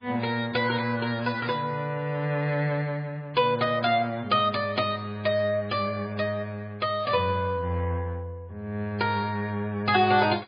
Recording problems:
lossy compression; MP3, log-spectral distance 3 dB, nothing above 4.8 kHz

